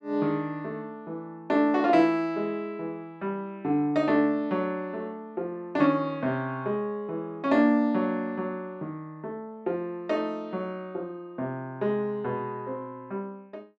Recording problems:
none

